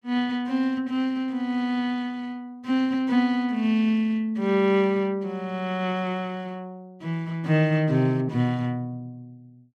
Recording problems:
none

